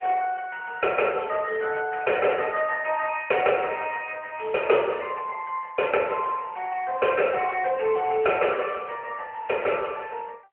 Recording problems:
telephone audio; 370 Hz to 3.1 kHz, AMR-NB

